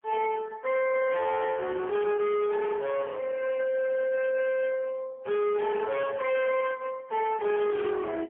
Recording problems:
phone line; 800 Hz to 2.5 kHz, AMR-NB, then MP3
distorted audio; hard clipping, uneven, signal-to-distortion ratio 6 dB

